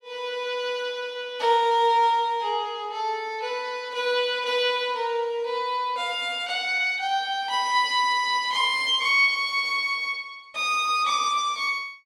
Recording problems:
none

